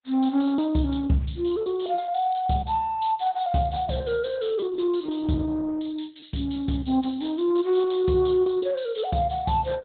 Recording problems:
low-pass filter; nothing above 4 kHz
lossy codec; Opus, log-spectral distance 4 dB
lost packets; 8% of the sound replaced, filled with repeated pitch periods

